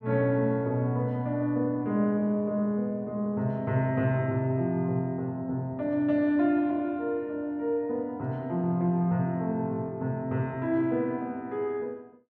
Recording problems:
none

